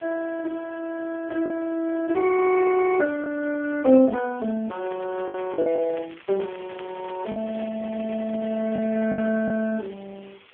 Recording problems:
phone line; 240 Hz to 2.2 kHz, AMR-NB
hiss; SNR 27 dB
packet loss; 4% of the sound replaced, filled with the last packet
crackle; from 4.5 to 9.5 s; loose cable, SNR 22 dB

